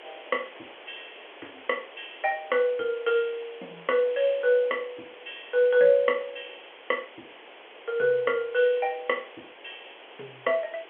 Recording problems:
phone line; 300 Hz to 3.4 kHz, G.711
background hiss; SNR 20 dB

